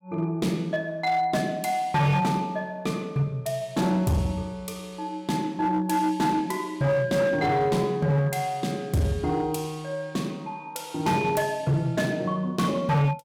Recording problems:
distortion; hard clipping, uneven, signal-to-distortion ratio 11 dB

